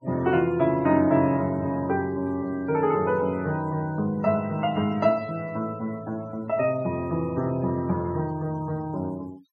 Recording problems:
noise reduction artefacts; signal-to-artefact ratio 24 dB

